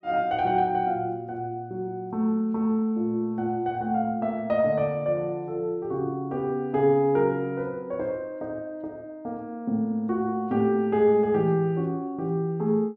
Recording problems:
none

